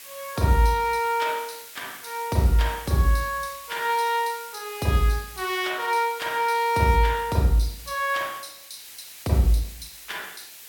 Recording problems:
hiss; slope +2 dB per octave, SNR 16 dB

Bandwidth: 17 kHz